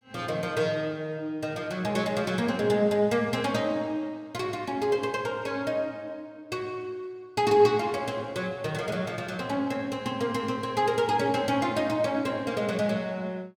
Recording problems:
none

